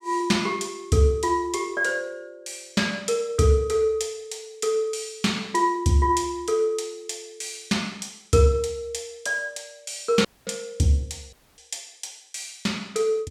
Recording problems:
audio cutting out; at 10 s and at 11 s

